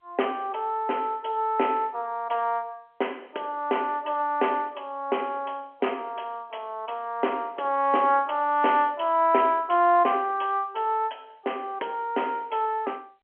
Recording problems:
telephone audio; 280 Hz to 3.2 kHz, G.711

